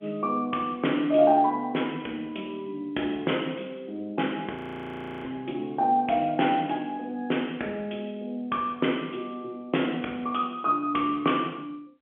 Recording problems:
telephone audio; 220 Hz to 3.4 kHz, G.711
audio freezing; at 4.5 s for 0.5 s

